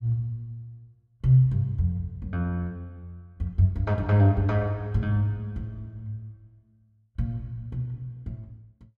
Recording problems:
none

